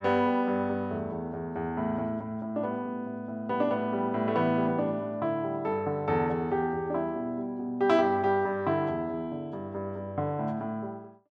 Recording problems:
none

